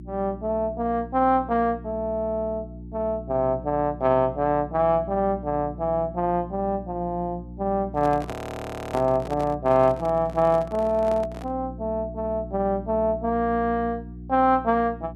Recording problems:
electrical hum; 60 Hz, harmonics up to 360 Hz, SNR 15 dB
microphone handling noise; from 8 to 12 s; peak -5 dB vs average level
audio freezing; at 8.5 s for 0.5 s

